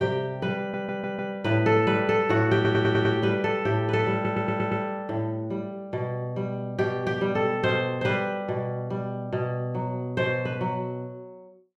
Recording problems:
audio stuttering; at 0.5 s, at 2.5 s and at 4 s

